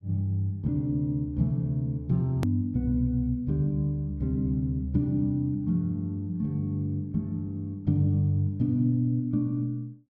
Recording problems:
click at an edit; at 2.5 s

